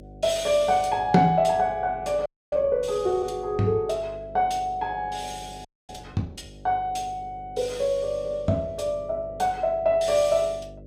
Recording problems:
hum; 50 Hz, harmonics up to 600 Hz, SNR 21 dB
audio freezing; at 2.5 s and at 5.5 s

